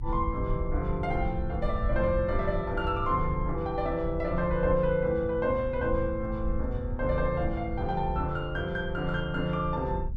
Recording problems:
rumble; below 76 Hz, SNR 6 dB

